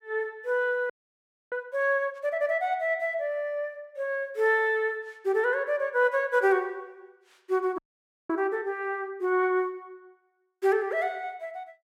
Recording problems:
frozen audio; at 1 s for 0.5 s and at 8 s for 0.5 s

